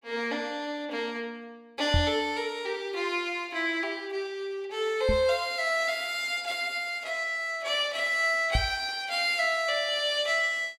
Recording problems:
knock on the microphone; at 2 s, at 5 s and at 8.5 s; peak +4 dB vs average level

